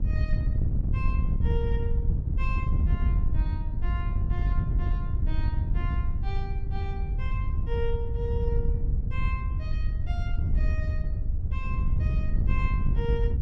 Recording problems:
wind on the microphone; below 90 Hz, SNR -11 dB

